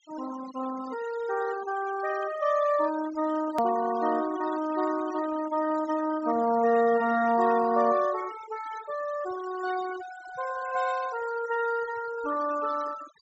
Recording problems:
low-pass filter; nothing above 7.9 kHz
denoising artefacts; signal-to-artefact ratio 14 dB
click at an edit; at 3.5 s

